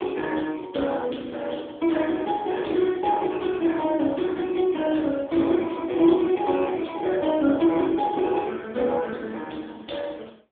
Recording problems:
telephone audio; 220 Hz to 3.5 kHz, AMR-NB

